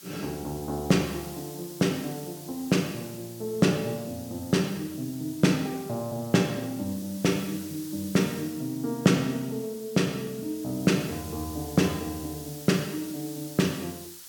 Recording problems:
background hiss; SNR 14 dB

